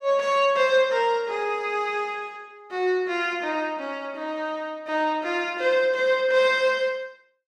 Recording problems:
none

